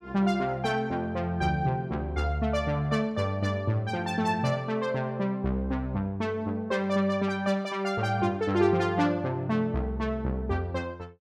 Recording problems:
none

